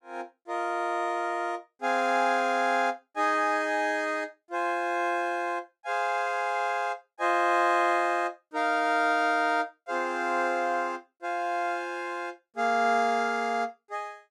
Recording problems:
none

